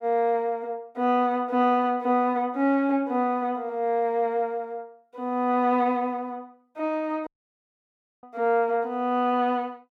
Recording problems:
audio cutting out; at 7.5 s for 1 s

